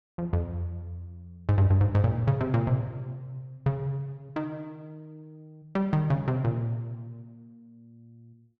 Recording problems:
none

